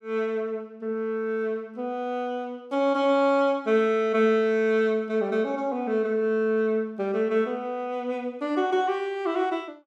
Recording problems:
none

